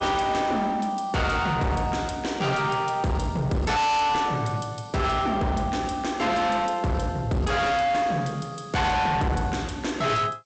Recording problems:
codec artefacts; G.722, log-spectral distance 4 dB, nothing above 8.2 kHz
distortion; hard clipping, signal-to-distortion ratio 6 dB

